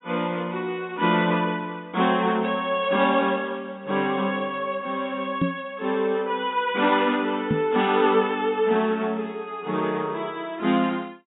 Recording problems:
treble cut off; nothing above 4 kHz
knock on the microphone; at 5.5 s and at 7.5 s; peak +4 dB vs average level

